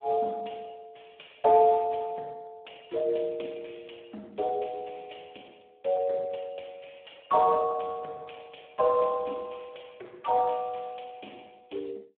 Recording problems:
phone line; 300 Hz to 3.4 kHz, Speex

